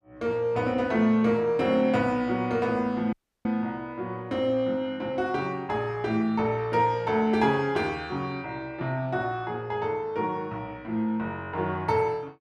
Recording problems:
audio cutting out; at 3 s

